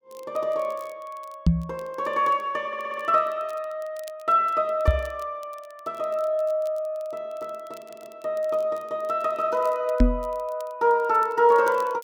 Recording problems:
crackle; vinyl, SNR 29 dB
knock on the microphone; at 1.5 s, at 5 s and at 10 s; peak +9 dB vs average level
audio stuttering; at 2.5 s and at 8 s

